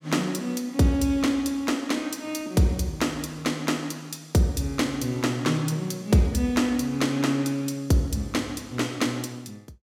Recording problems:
none

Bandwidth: 16.5 kHz